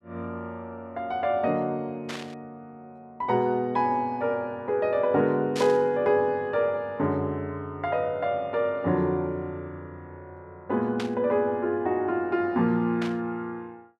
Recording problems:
static burst; 4 times, first at 2 s; peak -4 dB vs average level

